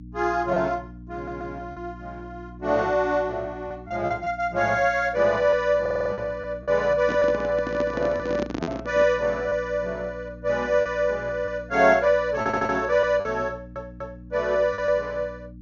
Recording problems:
treble missing; nothing above 6.9 kHz
electrical hum; 60 Hz, harmonics up to 300 Hz, SNR 18 dB
lost packets; 4% of the sound replaced, filled with repeated pitch periods
audio stuttering; 4 times, first at 1 s
microphone handling noise; from 7 to 9 s; peak 0 dB vs average level

